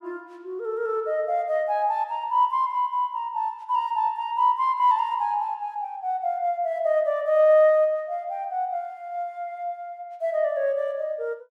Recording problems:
none

